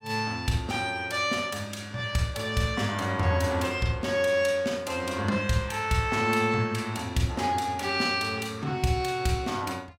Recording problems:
none

